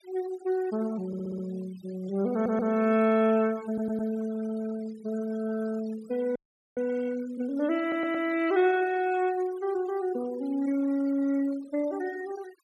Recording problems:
noise reduction artefacts; signal-to-artefact ratio 20 dB
audio stuttering; 4 times, first at 1 s
frozen audio; at 6.5 s

